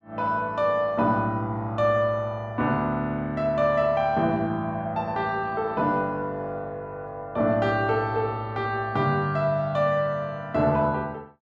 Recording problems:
none

